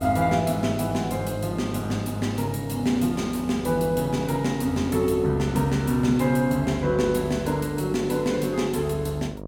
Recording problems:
hum; 50 Hz, harmonics up to 1.2 kHz, SNR 13 dB

